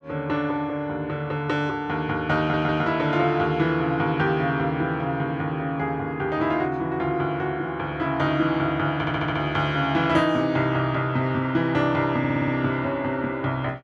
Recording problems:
audio stuttering; at 2.5 s, at 9 s and at 12 s

